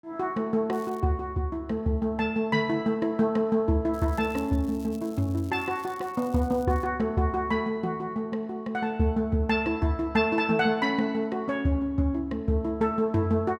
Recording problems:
crackling; at 0.5 s and from 4 to 7 s; loose cable, SNR 25 dB

